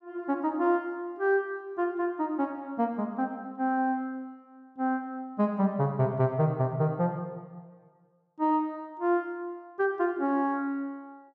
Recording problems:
none

